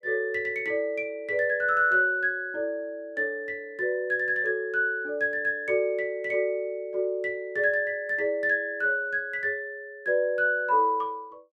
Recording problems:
none

